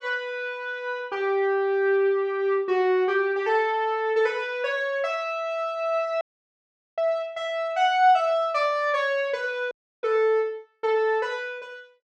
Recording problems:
audio cutting out; at 6 s for 1 s and at 9.5 s

